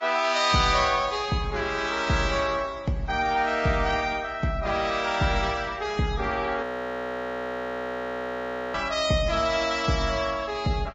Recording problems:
codec artefacts; Vorbis, log-spectral distance 3 dB, nothing above 7.3 kHz
frozen audio; at 6.5 s for 2 s

